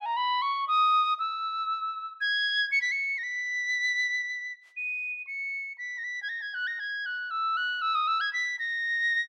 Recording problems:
none

